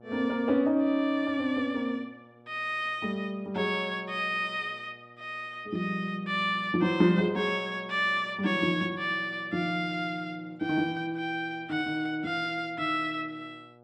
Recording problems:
electrical hum; 60 Hz, harmonics up to 1.4 kHz, SNR 26 dB

